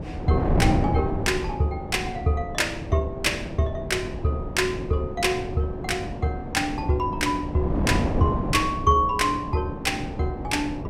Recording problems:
wind on the microphone; below 350 Hz, SNR 5 dB

